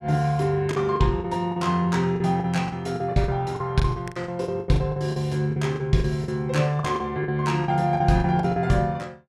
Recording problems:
lost packets; 15% of the sound replaced, filled with the last packet

